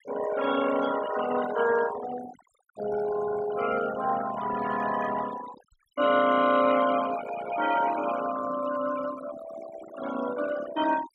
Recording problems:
denoising artefacts; signal-to-artefact ratio 11 dB

